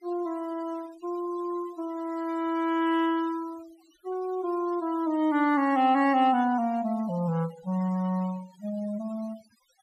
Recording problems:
denoising artefacts; signal-to-artefact ratio 22 dB

